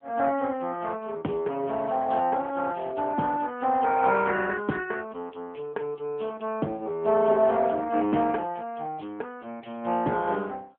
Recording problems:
phone line; 170 Hz to 3.3 kHz, AMR-NB

